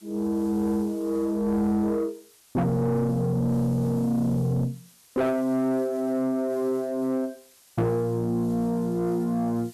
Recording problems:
distorted audio; soft clipping, signal-to-distortion ratio 11 dB
hiss; slope +1 dB per octave, SNR 26 dB

